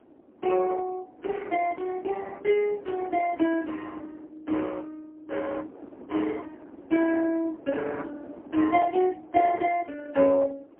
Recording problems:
telephone audio; 240 Hz to 3.3 kHz, AMR-NB, then MP3
wind on the microphone; below 520 Hz, SNR 20 dB

